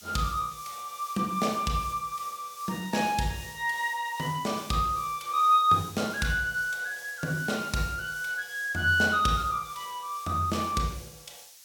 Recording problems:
hiss; slope +5 dB per octave, SNR 17 dB

